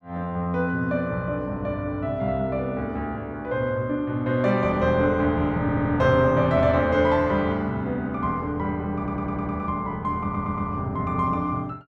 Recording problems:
stutter; at 5.5 s, at 9 s and at 10 s

